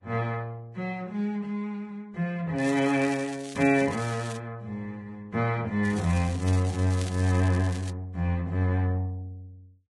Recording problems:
lossy compression; Vorbis, log-spectral distance 2 dB, nothing above 10.1 kHz
crackle; from 2.5 to 4.5 s and from 6 to 8 s; loose cable, SNR 16 dB

